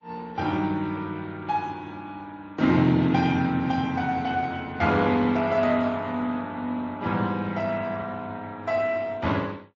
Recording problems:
lossy compression; Speex, then MP3, log-spectral distance 3 dB

